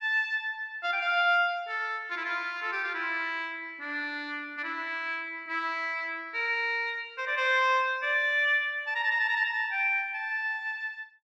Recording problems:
none

